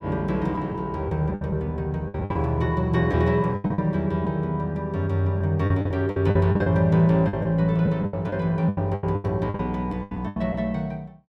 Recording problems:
lost packets; 13% of the sound replaced, filled with the last packet

